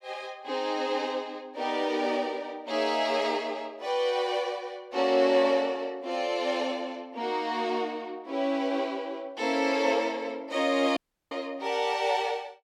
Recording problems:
audio cutting out; at 11 s

